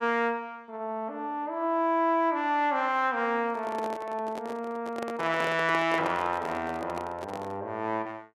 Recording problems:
microphone handling noise; from 3.5 to 7.5 s; peak -2 dB vs average level

